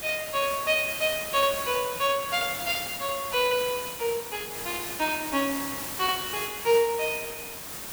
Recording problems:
hiss; slope -2 dB per octave, SNR 6 dB

